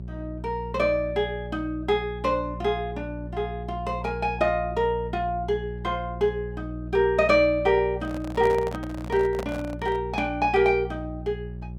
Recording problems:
hum; 60 Hz, harmonics up to 420 Hz, SNR 11 dB
microphone handling noise; from 8 to 10 s; peak -5 dB vs average level

